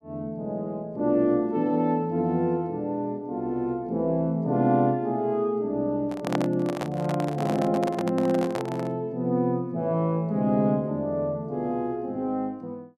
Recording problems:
microphone handling noise; from 6 to 9 s; peak +2 dB vs average level

